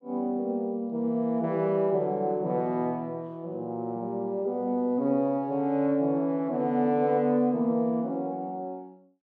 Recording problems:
none

